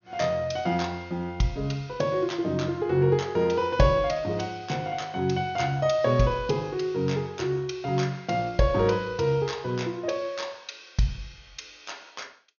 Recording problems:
treble cut off; nothing above 6.6 kHz

